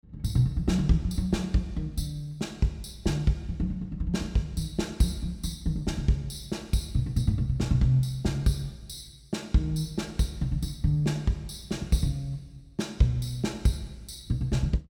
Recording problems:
none

